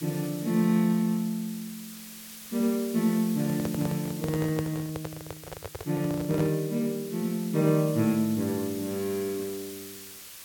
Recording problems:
hiss; slope +1 dB per octave, SNR 14 dB
handling noise; from 3.5 to 6.5 s; peak -2 dB vs average level

